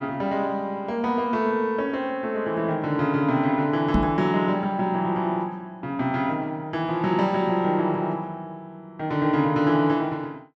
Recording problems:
knock on the microphone; at 4 s; peak +6 dB vs average level

